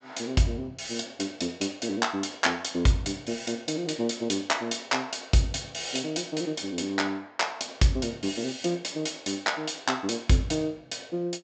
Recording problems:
low-pass filter; nothing above 8 kHz

